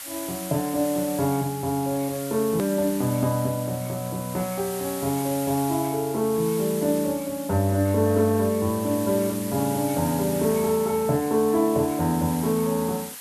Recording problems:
background hiss; SNR 11 dB
click at an edit; at 2.5 s

